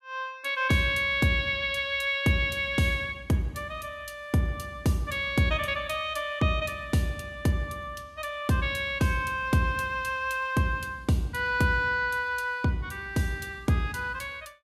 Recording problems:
none

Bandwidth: 15.5 kHz